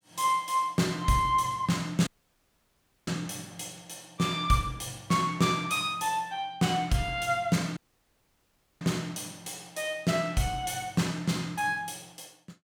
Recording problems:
dropout; at 2 s for 1 s and at 8 s for 1 s

